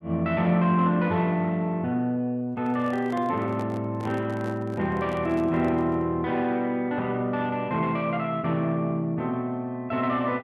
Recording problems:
microphone handling noise; from 2.5 to 6 s; peak -9 dB vs average level

